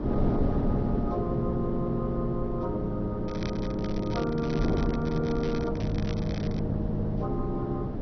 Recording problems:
codec artefacts; MP2, log-spectral distance 2 dB, nothing above 5.8 kHz
wind noise; below 330 Hz, SNR 2 dB
crackle; from 3.5 to 5.5 s and at 5.5 s; loose cable, SNR 15 dB

